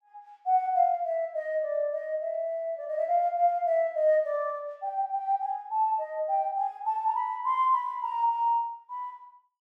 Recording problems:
none

